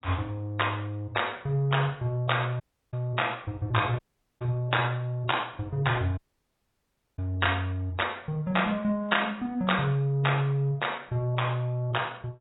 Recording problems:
codec artefacts; AAC, log-spectral distance 5 dB, nothing above 3.8 kHz
audio cutting out; at 2.5 s, at 4 s and at 6 s for 1 s

